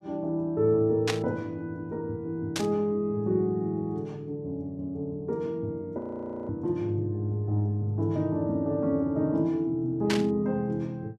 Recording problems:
burst of static; at 1 s, at 2.5 s and at 10 s; peak +3 dB vs average level
frozen audio; at 6 s for 0.5 s

